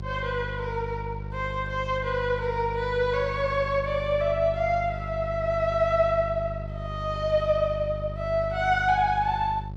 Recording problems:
mains hum; 50 Hz, harmonics up to 600 Hz, SNR 9 dB

